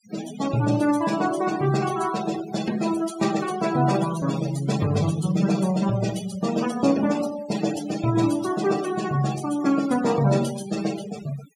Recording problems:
denoising artefacts; signal-to-artefact ratio 13 dB

